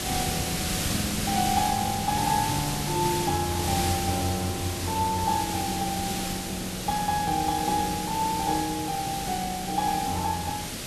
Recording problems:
background hiss; SNR 2 dB

